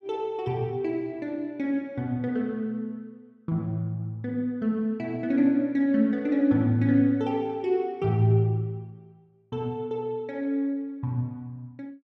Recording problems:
none

